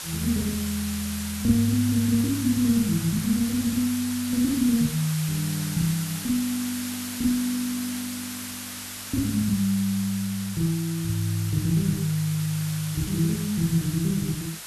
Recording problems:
background hiss; slope +1 dB per octave, SNR 8 dB

